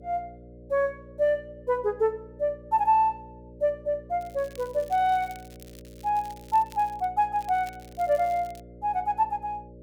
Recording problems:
electrical hum; 60 Hz, harmonics up to 600 Hz, SNR 20 dB
crackle; from 4 to 7 s and from 7.5 to 8.5 s; loose cable, SNR 25 dB

